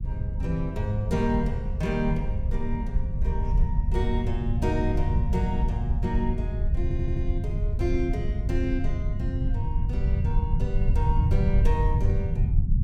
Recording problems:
low-frequency rumble; below 96 Hz, SNR -4 dB
stutter; at 7 s

